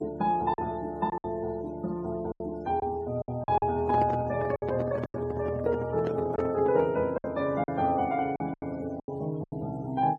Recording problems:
denoising artefacts; signal-to-artefact ratio 23 dB
lost packets; 9% of the sound replaced, filled with silence
handling noise; from 3.5 to 7 s; peak 0 dB vs average level

